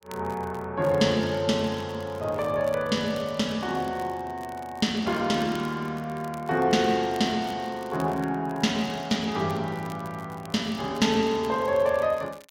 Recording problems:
crackling; vinyl, SNR 24 dB

